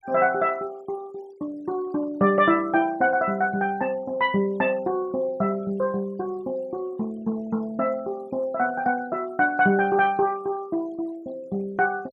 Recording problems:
noise reduction artefacts; signal-to-artefact ratio 26 dB

